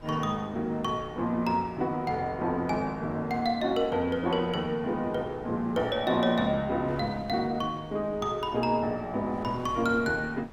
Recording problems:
wind on the microphone; below 580 Hz, SNR 20 dB

